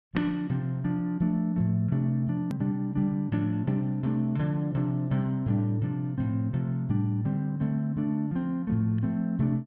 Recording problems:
treble cut off; nothing above 5.5 kHz
edit click; at 2.5 s

